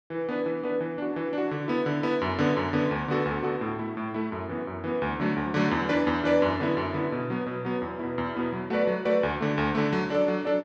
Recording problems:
none

